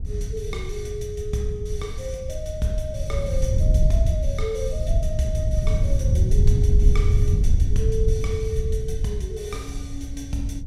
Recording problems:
wind on the microphone; below 86 Hz, SNR -6 dB

